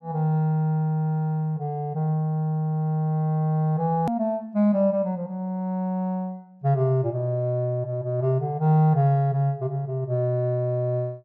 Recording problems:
click at an edit; at 4 s

